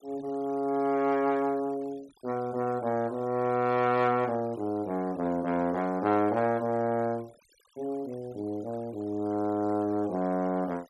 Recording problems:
denoising artefacts; signal-to-artefact ratio 26 dB

